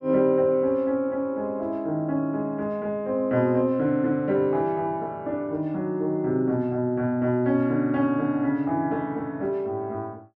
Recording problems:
none

